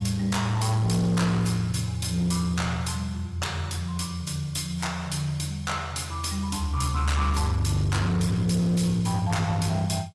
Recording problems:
lossy codec; AAC, log-spectral distance 4 dB, nothing above 11.6 kHz
distorted audio; hard clipping, uneven, signal-to-distortion ratio 10 dB

